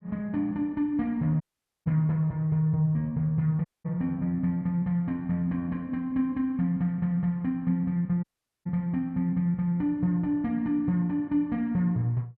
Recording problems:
audio cutting out; at 1.5 s, at 3.5 s and at 8 s

